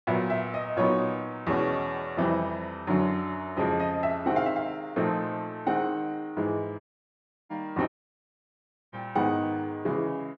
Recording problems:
dropout; at 7 s for 0.5 s and at 8 s for 1 s

